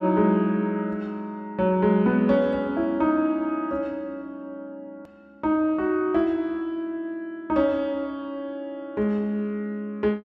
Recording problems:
edit click; at 5 s

